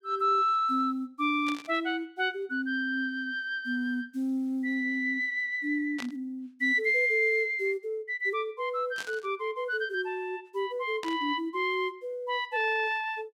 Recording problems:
static burst; 4 times, first at 1.5 s; peak -6 dB vs average level

